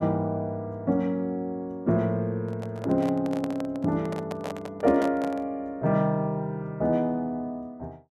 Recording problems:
microphone handling noise; from 2.5 to 5.5 s; peak -2 dB vs average level

